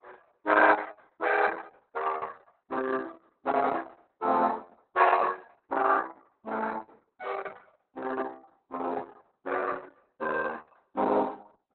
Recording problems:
lossy compression; Opus, log-spectral distance 5 dB, nothing above 4.1 kHz

